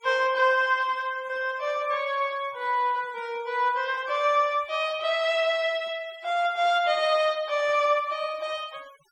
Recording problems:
noise reduction artefacts; signal-to-artefact ratio 24 dB

